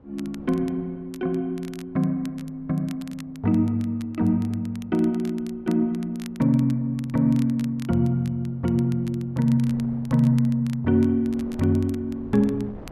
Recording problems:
wind on the microphone; below 430 Hz, SNR 25 dB
crackling; vinyl, SNR 25 dB

